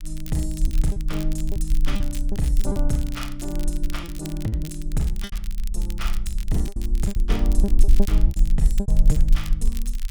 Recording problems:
rumble; below 42 Hz, strongest tone 24 Hz, SNR -4 dB
crackle; vinyl, SNR 13 dB
lost packets; 10% of the sound replaced, filled with repeated pitch periods

